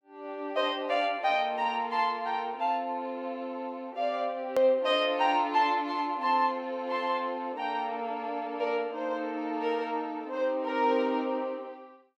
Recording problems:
click at an edit; at 4.5 s

